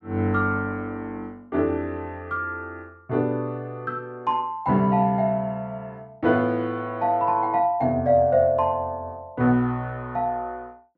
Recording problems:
none

